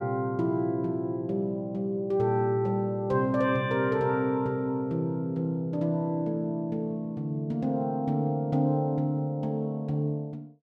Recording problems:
none

